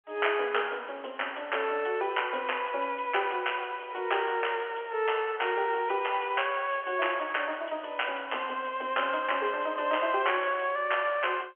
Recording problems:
telephone audio; 320 Hz to 3.2 kHz, G.711

